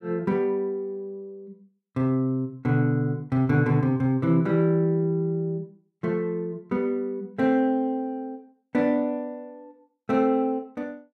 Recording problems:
none

